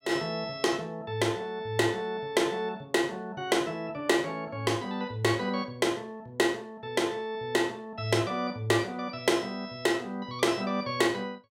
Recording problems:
none

